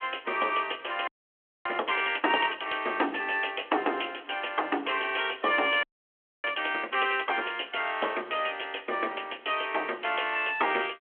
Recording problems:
telephone audio; 260 Hz to 3.4 kHz, G.726
audio freezing; at 1 s for 0.5 s and at 6 s for 0.5 s

